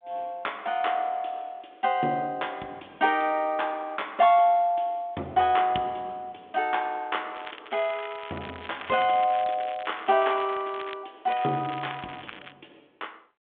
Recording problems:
telephone audio; 170 Hz to 3.5 kHz, G.726
crackle; from 7.5 to 11 s and from 11 to 13 s; loose cable, SNR 17 dB

